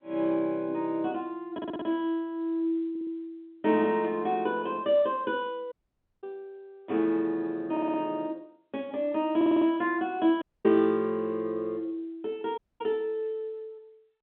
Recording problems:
telephone audio; 190 Hz to 3.5 kHz, G.711
audio stuttering; 4 times, first at 1.5 s
dropout; at 5.5 s for 0.5 s, at 10 s and at 13 s

